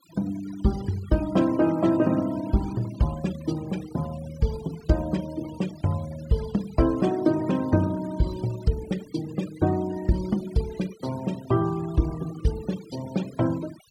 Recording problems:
denoising artefacts; signal-to-artefact ratio 18 dB

